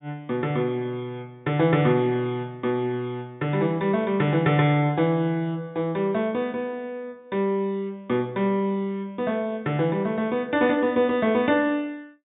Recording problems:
treble cut off; nothing above 4 kHz

